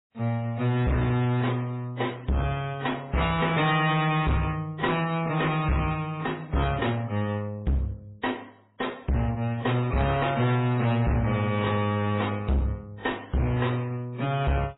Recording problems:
lossy compression; MP3, then AAC, log-spectral distance 4 dB, nothing above 3.8 kHz
distorted audio; hard clipping, uneven, signal-to-distortion ratio 5 dB

